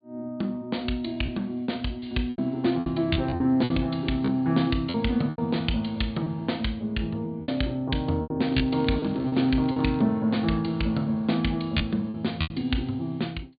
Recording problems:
treble cut off; nothing above 4.6 kHz
packet loss; 7% of the sound replaced, filled with repeated pitch periods
crackling; from 8.5 to 10 s; loose cable, SNR 25 dB

